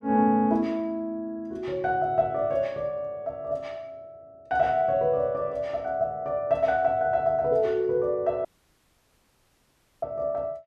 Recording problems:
dropout; at 8.5 s for 1.5 s

